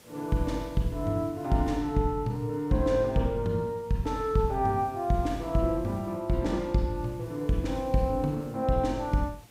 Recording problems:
hiss; slope -3 dB per octave, SNR 27 dB

